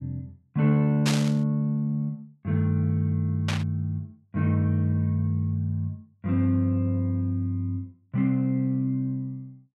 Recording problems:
static burst; at 1 s and at 3.5 s; peak +2 dB vs average level

